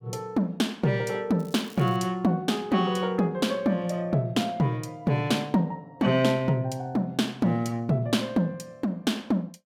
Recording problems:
crackle; at 1.5 s; loose cable, SNR 25 dB

